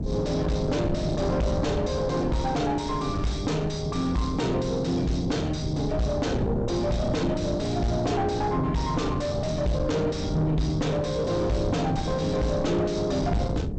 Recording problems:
codec artefacts; G.722, log-spectral distance 3 dB, nothing above 8 kHz
distortion; soft clipping, signal-to-distortion ratio 7 dB
wind on the microphone; below 260 Hz, SNR 5 dB

